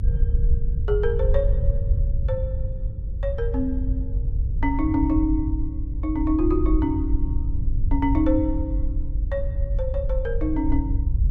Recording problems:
hum; 60 Hz, harmonics up to 540 Hz, SNR 21 dB
low-frequency rumble; below 72 Hz, SNR 0 dB

